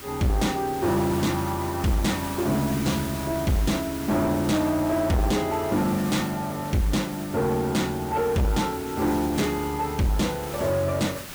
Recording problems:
distortion; soft clipping, signal-to-distortion ratio 7 dB
background hiss; slope -2 dB per octave, SNR 12 dB

